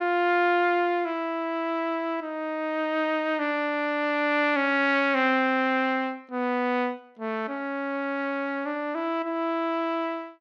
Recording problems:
none

